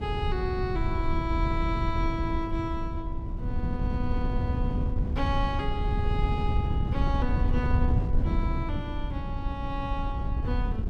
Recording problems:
wind on the microphone; below 110 Hz, SNR -4 dB

